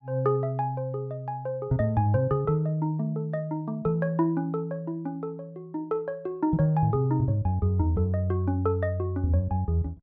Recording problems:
none

